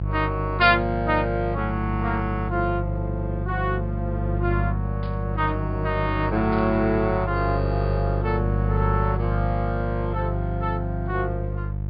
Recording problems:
low-pass filter; nothing above 5.1 kHz
hum; 50 Hz, harmonics up to 500 Hz, SNR 2 dB
burst of static; at 5 s and at 6.5 s; peak -15 dB vs average level

